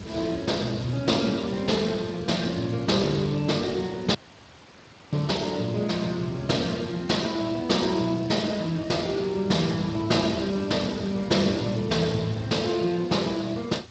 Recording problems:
lossy compression; Speex, log-spectral distance 8 dB, nothing above 7.6 kHz
background hiss; slope -1 dB per octave, SNR 23 dB
wind on the microphone; below 300 Hz, SNR 15 dB
dropout; at 4 s for 1 s

